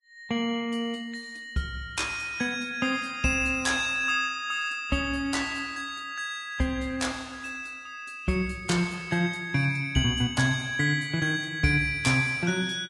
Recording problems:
codec artefacts; Vorbis, log-spectral distance 3 dB, nothing above 10.7 kHz

